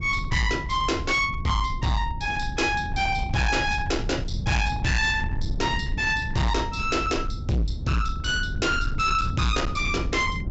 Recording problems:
low-pass filter; nothing above 7.6 kHz
distorted audio; hard clipping, uneven, signal-to-distortion ratio 6 dB
low-frequency rumble; below 140 Hz, SNR 7 dB

